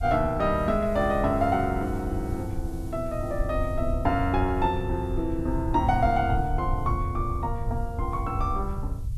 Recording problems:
hiss; slope +4 dB per octave, SNR 29 dB
rumble; below 96 Hz, SNR 6 dB

